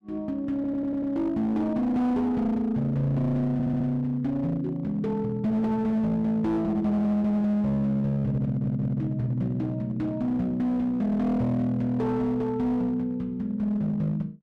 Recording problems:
distortion; hard clipping, uneven, signal-to-distortion ratio 11 dB
audio stuttering; at 0.5 s, at 3.5 s and at 8.5 s

